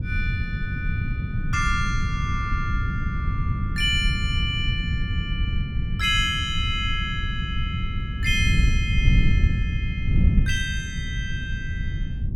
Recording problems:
wind noise; below 120 Hz, SNR -1 dB

